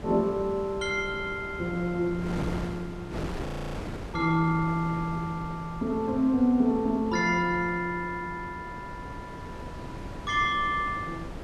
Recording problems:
wind on the microphone; below 570 Hz, SNR 11 dB
frozen audio; at 3.5 s

